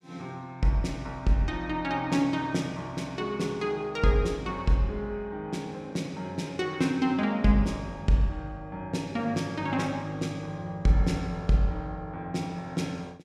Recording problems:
none

